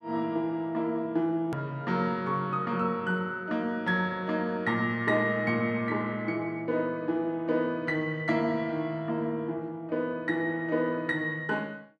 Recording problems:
edit click; at 1.5 s

